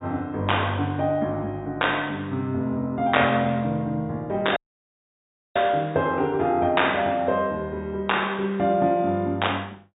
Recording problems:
treble cut off; nothing above 4 kHz
dropout; at 4.5 s for 1 s

